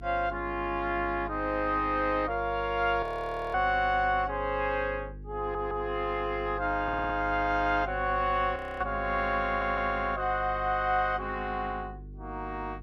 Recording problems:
mains hum; 50 Hz, harmonics up to 450 Hz, SNR 14 dB
frozen audio; at 3 s for 0.5 s and at 8.5 s
audio stuttering; at 5.5 s, at 7 s and at 9.5 s

